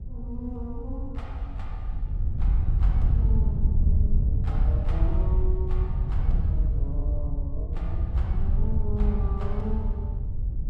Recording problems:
hum; 60 Hz, harmonics up to 540 Hz, SNR 27 dB
wind noise; below 78 Hz, SNR -11 dB

